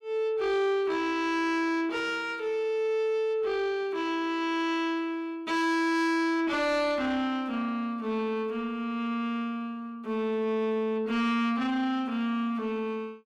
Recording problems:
distortion; soft clipping, signal-to-distortion ratio 11 dB

